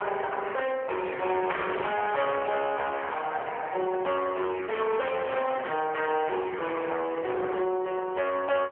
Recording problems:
phone line; 340 Hz to 3.4 kHz, AMR-NB
distorted audio; hard clipping, signal-to-distortion ratio 10 dB

